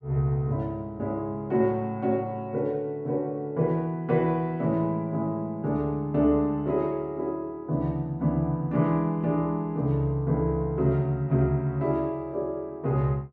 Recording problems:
none

